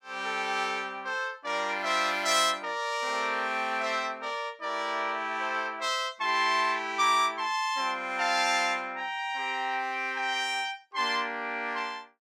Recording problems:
none

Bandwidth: 16.5 kHz